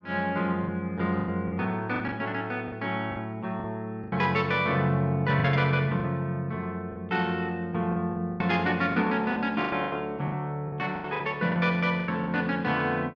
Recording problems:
lost packets; 10% of the sound replaced, filled with the last packet

